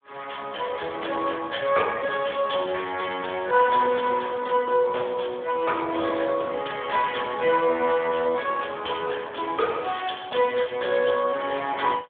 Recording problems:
phone line; 300 Hz to 3.4 kHz, Speex

